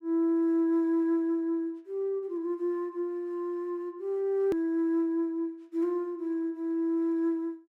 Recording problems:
hard cut with a click; at 4.5 s

